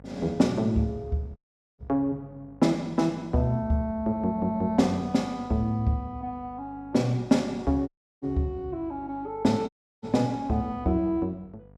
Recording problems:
electrical hum; 50 Hz, harmonics up to 1 kHz, SNR 24 dB
audio cutting out; at 1.5 s, at 8 s and at 9.5 s

